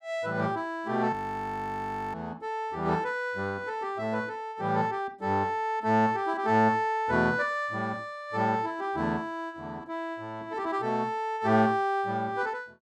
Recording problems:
frozen audio; at 1 s for 1 s

